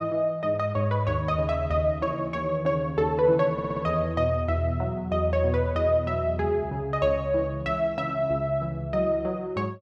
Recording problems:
audio stuttering; at 3.5 s

